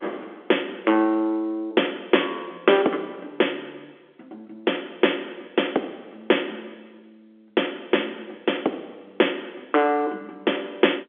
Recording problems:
phone line; 260 Hz to 3.5 kHz, G.711

